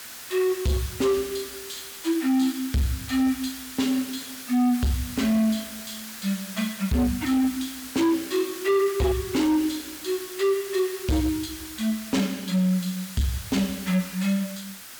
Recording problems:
distorted audio; hard clipping, signal-to-distortion ratio 11 dB
background hiss; SNR 12 dB

